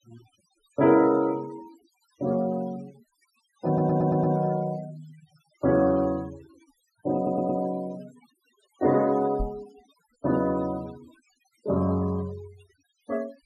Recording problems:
denoising artefacts; signal-to-artefact ratio 23 dB
stutter; at 3.5 s and at 7 s
microphone bump; at 9.5 s; peak -2 dB vs average level

